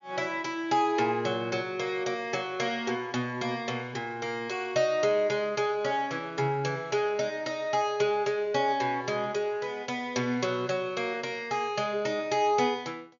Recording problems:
low-pass filter; nothing above 7 kHz

